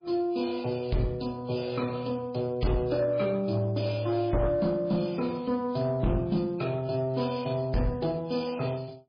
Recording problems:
lossy codec; MP3, log-spectral distance 4 dB, nothing above 5 kHz
distorted audio; soft clipping, signal-to-distortion ratio 11 dB

